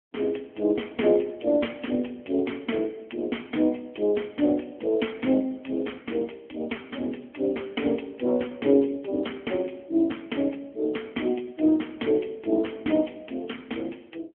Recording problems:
phone line; 220 Hz to 3.3 kHz, AMR-NB

